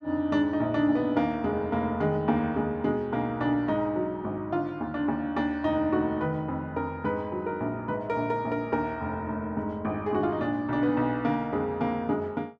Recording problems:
none

